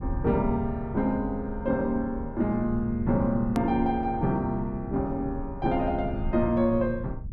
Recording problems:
low-frequency rumble; below 110 Hz, SNR 11 dB
click at an edit; at 3.5 s

